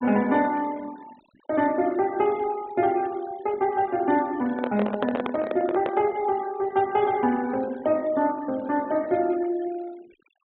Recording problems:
treble cut off; nothing above 4 kHz
noise reduction artefacts; signal-to-artefact ratio 21 dB
handling noise; from 4.5 to 6 s; peak +1 dB vs average level

